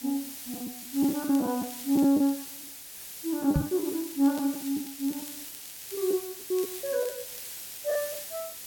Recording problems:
hiss; SNR 9 dB
packet loss; 10% of the sound replaced, filled with the last packet
crackling; from 1 to 2.5 s, from 4 to 6 s and from 6.5 to 8 s; loose cable, SNR 19 dB
knock on the microphone; at 3.5 s; peak +6 dB vs average level

